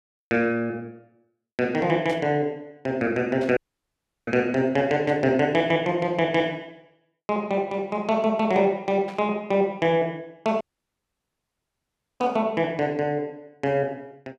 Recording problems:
burst of static; 5 times, first at 2 s; peak -14 dB vs average level
dropout; at 3.5 s for 0.5 s and at 11 s for 1.5 s

